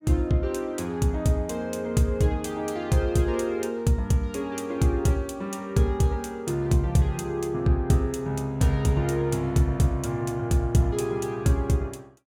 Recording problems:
none

